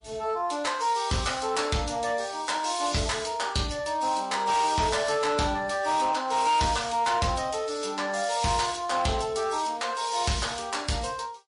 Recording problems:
lossy compression; MP3, log-spectral distance 4 dB, nothing above 10.4 kHz
distortion; hard clipping, signal-to-distortion ratio 12 dB

